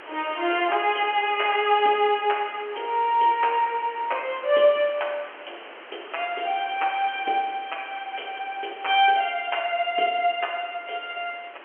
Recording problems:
telephone audio; 280 Hz to 3.2 kHz, G.711
hiss; SNR 19 dB

